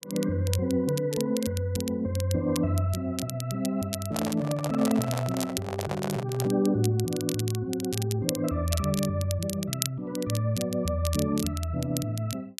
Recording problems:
crackle; vinyl, SNR 9 dB
microphone handling noise; from 4 to 6.5 s; peak -1 dB vs average level

